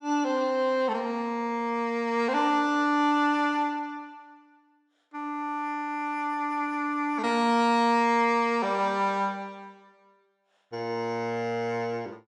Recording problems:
none

